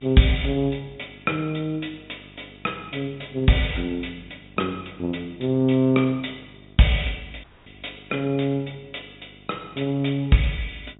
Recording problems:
treble missing; nothing above 4 kHz
hum; 50 Hz, harmonics up to 1.1 kHz, SNR 25 dB
dropout; at 7.5 s

